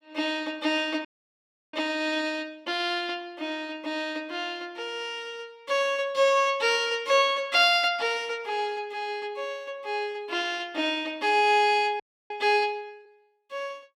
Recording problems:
audio freezing; at 1 s for 0.5 s and at 12 s

